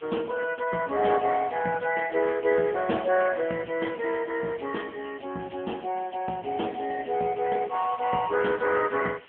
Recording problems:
phone line; 190 Hz to 3.3 kHz, AMR-NB
hiss; SNR 24 dB

